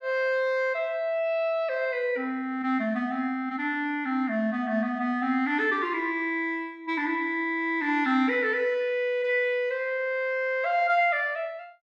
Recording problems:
none

